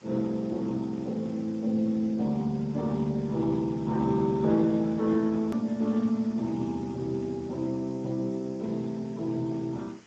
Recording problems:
codec artefacts; Speex, log-spectral distance 3 dB, nothing above 13.1 kHz
background hiss; slope -4 dB per octave, SNR 26 dB
edit click; at 5.5 s

